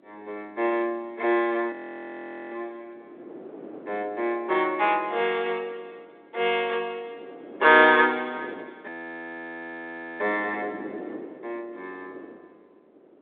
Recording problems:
telephone audio; 280 Hz to 3.7 kHz, G.726
wind noise; below 530 Hz, SNR 19 dB
frozen audio; at 1.5 s for 1 s and at 9 s for 1.5 s

